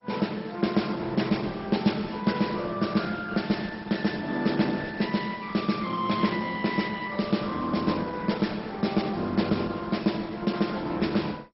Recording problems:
lossy codec; Opus, then MP2, log-spectral distance 6 dB, nothing above 5.5 kHz

